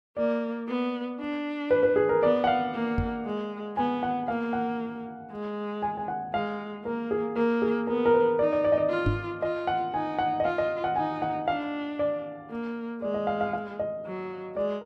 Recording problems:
microphone bump; at 3 s and at 9 s; peak +5 dB vs average level

